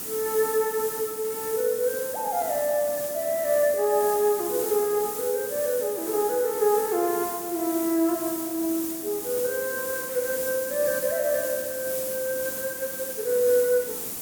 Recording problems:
background hiss; SNR 5 dB

